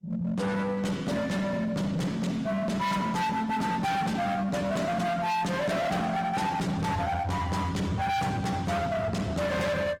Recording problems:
lossy codec; Opus, log-spectral distance 3 dB, nothing above 18.3 kHz
distortion; hard clipping, signal-to-distortion ratio 7 dB

